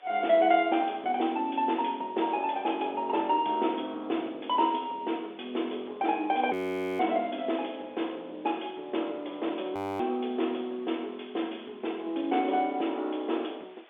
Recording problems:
phone line; 240 Hz to 3.6 kHz, G.711
hiss; SNR 27 dB
frozen audio; at 6.5 s and at 10 s

